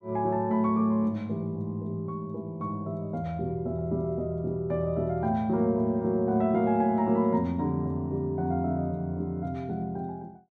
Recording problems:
none

